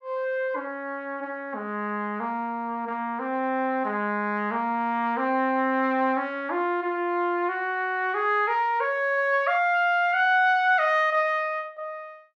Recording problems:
none

